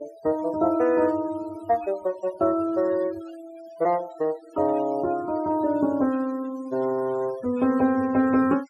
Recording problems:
noise reduction artefacts; signal-to-artefact ratio 22 dB

